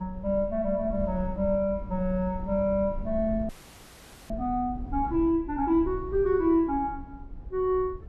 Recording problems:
rumble; below 76 Hz, SNR 13 dB
audio freezing; at 3.5 s for 1 s

